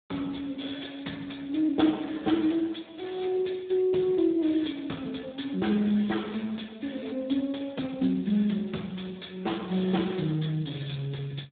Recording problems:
telephone audio; 110 Hz to 3.7 kHz, Speex

